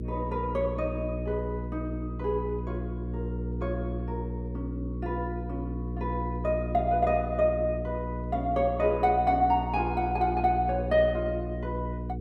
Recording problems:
hum; 60 Hz, harmonics up to 480 Hz, SNR 5 dB

